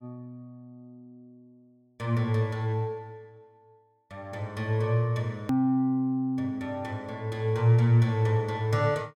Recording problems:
hard cut with a click; at 5.5 s

